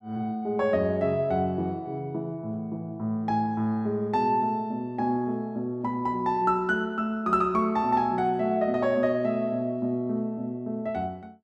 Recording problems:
none

